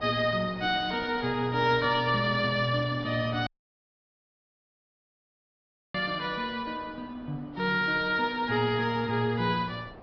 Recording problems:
low-pass filter; nothing above 5.5 kHz
lossy codec; AAC, log-spectral distance 2 dB
wind noise; below 840 Hz, SNR 20 dB
audio cutting out; at 3.5 s for 2.5 s

